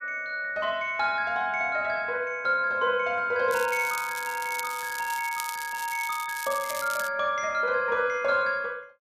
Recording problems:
crackling; from 3.5 to 7 s; loose cable, SNR 11 dB

